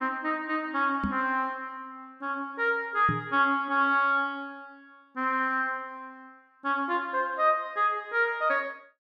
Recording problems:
knock on the microphone; at 1 s and at 3 s; peak 0 dB vs average level

